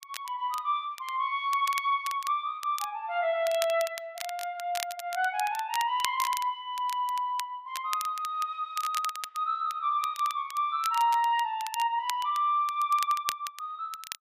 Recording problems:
crackling; vinyl, SNR 12 dB

